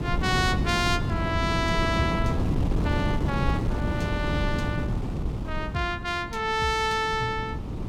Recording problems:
wind noise; below 250 Hz, SNR 1 dB

